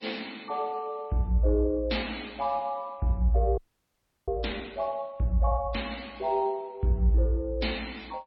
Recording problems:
lossy codec; MP3, log-spectral distance 3 dB, nothing above 4.5 kHz
audio freezing; at 3.5 s for 0.5 s

